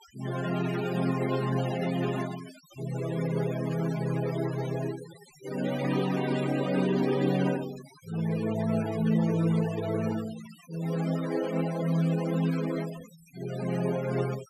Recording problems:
denoising artefacts; signal-to-artefact ratio 13 dB

